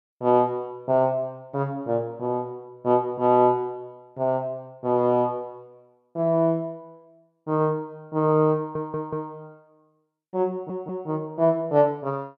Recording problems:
stutter; at 8.5 s and at 11 s

